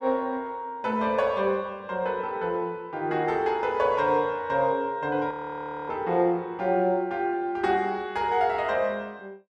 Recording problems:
frozen audio; at 5.5 s for 0.5 s

